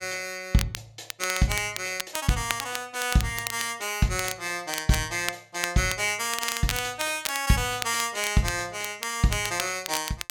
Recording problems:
crackling; vinyl, SNR 8 dB

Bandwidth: 17.5 kHz